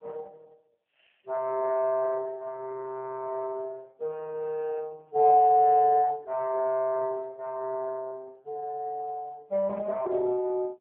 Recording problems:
phone line; 240 Hz to 2.6 kHz, AMR-NB

